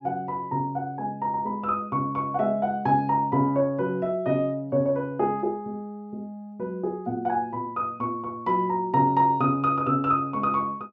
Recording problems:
none

